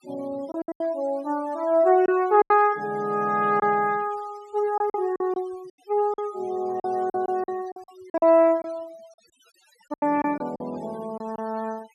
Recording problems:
noise reduction artefacts; signal-to-artefact ratio 24 dB
lost packets; 9% of the sound replaced, filled with silence

